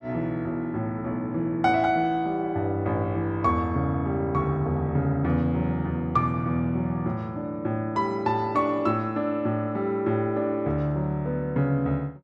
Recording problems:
none

